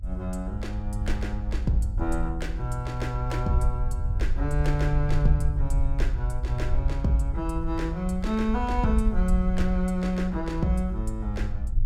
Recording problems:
rumble; below 60 Hz, SNR 1 dB

